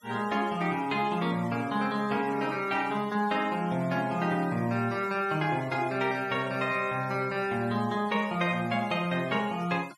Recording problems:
denoising artefacts; signal-to-artefact ratio 21 dB

